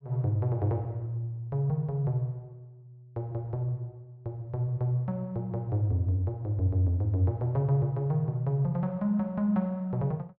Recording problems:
treble cut off; nothing above 5.5 kHz

